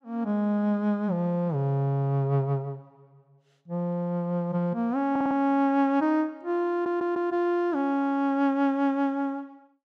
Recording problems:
audio stuttering; at 5 s and at 6.5 s

